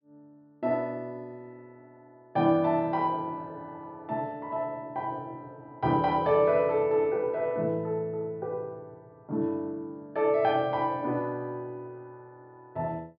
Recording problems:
treble cut off; nothing above 5.5 kHz

